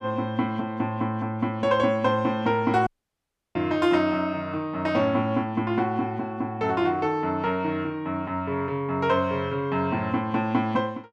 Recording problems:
dropout; at 3 s for 0.5 s

